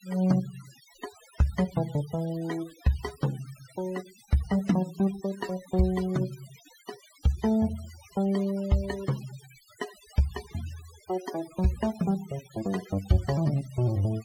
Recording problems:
denoising artefacts; signal-to-artefact ratio 18 dB

